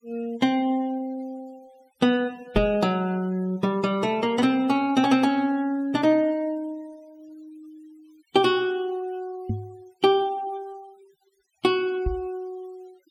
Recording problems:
noise reduction artefacts; signal-to-artefact ratio 25 dB
microphone bump; at 2.5 s, at 9.5 s and at 12 s; peak 0 dB vs average level

